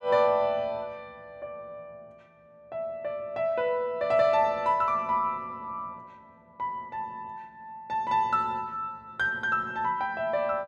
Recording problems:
none

